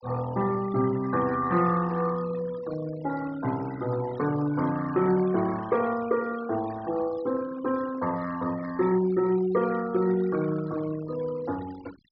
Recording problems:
treble missing; nothing above 5.5 kHz
denoising artefacts; signal-to-artefact ratio 18 dB

